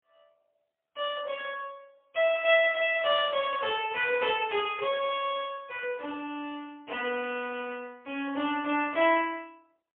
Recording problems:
telephone audio; 260 Hz to 3.4 kHz, AMR-NB, then MP3

